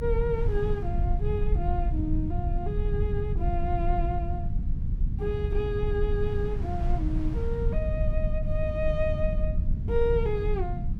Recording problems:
low-frequency rumble; below 88 Hz, SNR -2 dB
wind noise; below 1.1 kHz, SNR 22 dB

